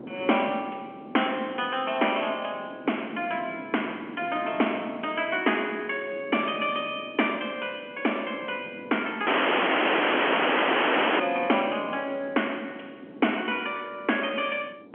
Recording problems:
telephone audio; 240 Hz to 3.3 kHz, G.711
wind on the microphone; below 430 Hz, SNR 15 dB
audio cutting out; at 9.5 s for 2 s

